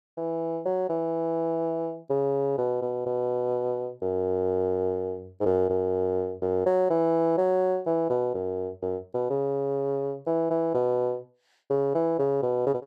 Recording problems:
none

